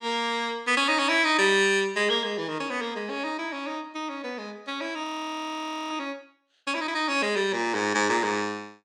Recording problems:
audio freezing; at 5 s for 1 s

